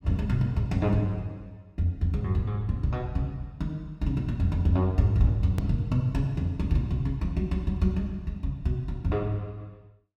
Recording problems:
click at an edit; at 5.5 s

